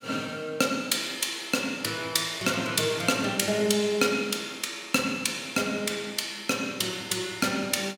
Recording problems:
none

